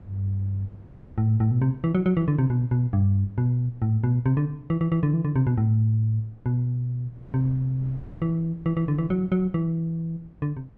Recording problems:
wind noise; below 210 Hz, SNR 24 dB

